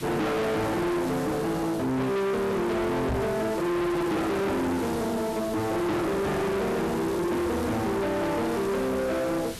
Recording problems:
distortion; hard clipping, signal-to-distortion ratio 6 dB
background hiss; slope -2 dB per octave, SNR 14 dB
microphone bump; at 3 s; peak +6 dB vs average level

